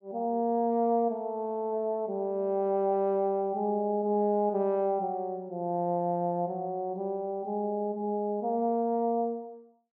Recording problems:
none

